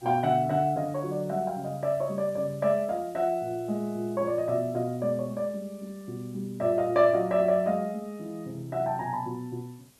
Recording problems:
background hiss; SNR 27 dB

